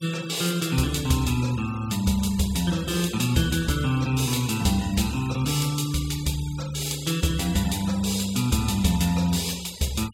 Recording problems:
denoising artefacts; signal-to-artefact ratio 18 dB

